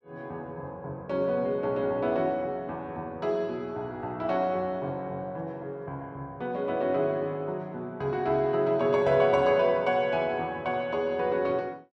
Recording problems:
none

